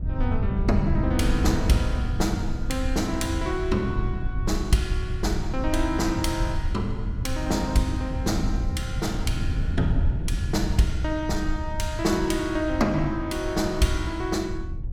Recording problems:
low-frequency rumble; below 70 Hz, SNR 7 dB
wind noise; below 110 Hz, SNR 4 dB

